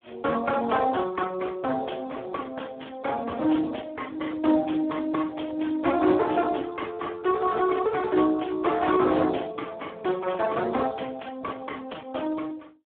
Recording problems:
telephone audio; 240 Hz to 2.1 kHz, Speex

